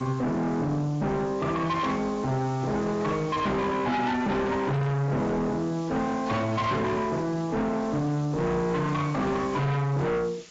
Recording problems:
lossy compression; AAC, log-spectral distance 5 dB, nothing above 7.6 kHz
distorted audio; soft clipping, signal-to-distortion ratio 7 dB
hiss; slope +1 dB per octave, SNR 21 dB

